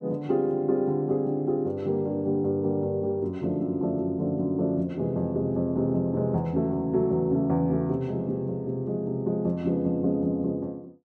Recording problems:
none

